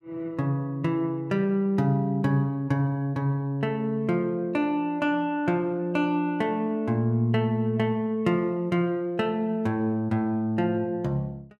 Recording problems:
none

